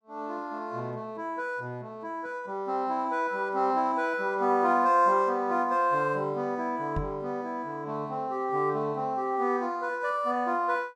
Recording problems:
knock on the microphone; at 7 s; peak -1 dB vs average level

